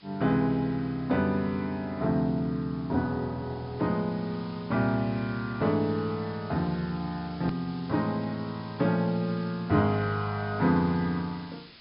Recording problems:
treble cut off; nothing above 5.5 kHz
background hiss; SNR 22 dB
hard cut with a click; at 7.5 s

